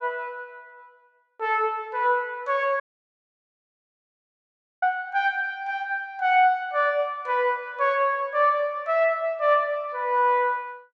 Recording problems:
dropout; at 3 s for 2 s

